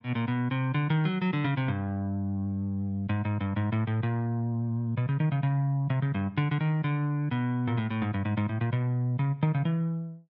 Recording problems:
none

